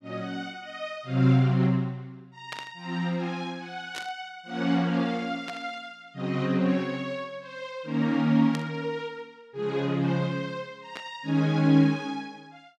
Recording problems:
static burst; 5 times, first at 2.5 s; peak -5 dB vs average level

